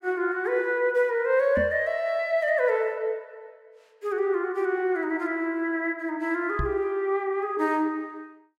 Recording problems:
microphone bump; at 1.5 s and at 6.5 s; peak 0 dB vs average level

